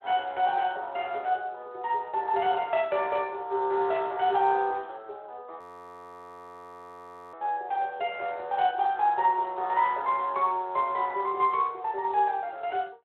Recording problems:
telephone audio; 320 Hz to 3.7 kHz, Speex
audio freezing; at 5.5 s for 1.5 s

